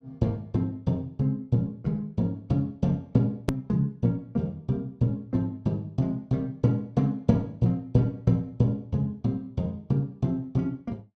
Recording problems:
click at an edit; at 3.5 s

